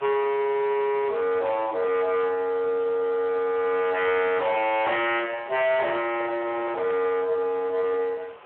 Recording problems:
phone line; 370 Hz to 3.6 kHz, Speex
distorted audio; hard clipping, uneven, signal-to-distortion ratio 8 dB
hiss; SNR 22 dB
microphone handling noise; from 5 to 7 s; peak -8 dB vs average level

